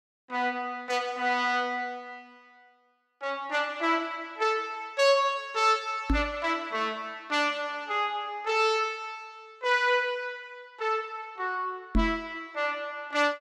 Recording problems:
knock on the microphone; at 6 s and at 12 s; peak +6 dB vs average level

